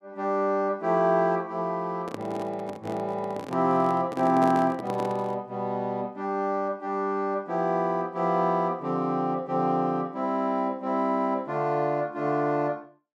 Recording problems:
handling noise; from 2 to 5.5 s; peak -3 dB vs average level

